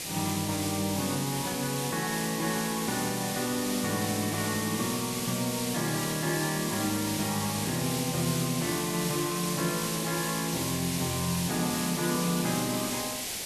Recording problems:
hiss; SNR 2 dB

